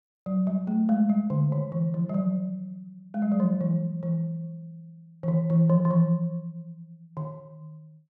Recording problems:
none

